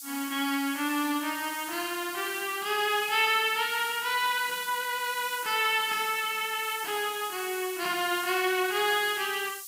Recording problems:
hiss; SNR 11 dB

